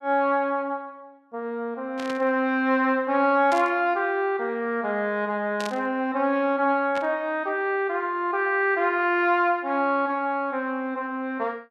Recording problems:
burst of static; 4 times, first at 2 s; peak -6 dB vs average level

